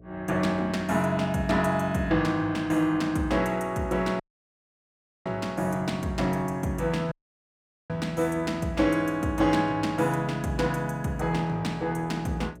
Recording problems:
hum; 60 Hz, harmonics up to 660 Hz, SNR 23 dB
dropout; at 4 s for 1 s and at 7 s for 1 s

